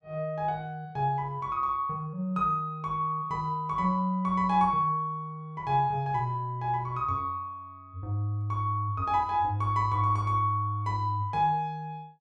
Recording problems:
none

